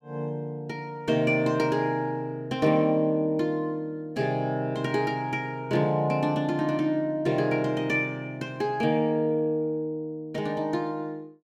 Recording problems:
none

